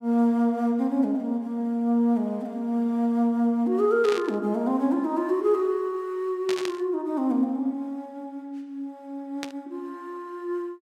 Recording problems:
static burst; at 4 s, at 6.5 s and at 9.5 s; peak -4 dB vs average level

